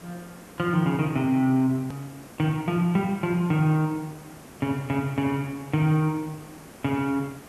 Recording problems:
hiss; slope -6 dB per octave, SNR 20 dB
click at an edit; at 2 s

